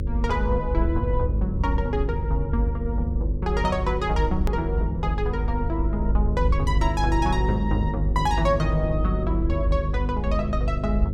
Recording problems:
hum; 50 Hz, harmonics up to 550 Hz, SNR 1 dB
low-frequency rumble; below 72 Hz, SNR 3 dB
click at an edit; at 4.5 s

